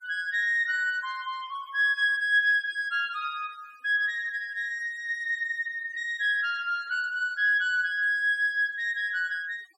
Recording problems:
noise reduction artefacts; signal-to-artefact ratio 27 dB

